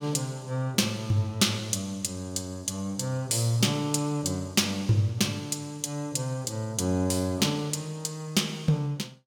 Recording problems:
none

